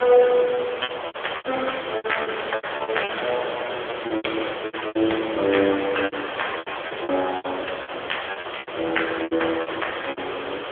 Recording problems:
telephone audio; 300 Hz to 3.4 kHz, AMR-NB
hiss; SNR 5 dB
packet loss; 18% of the sound replaced, filled with repeated pitch periods

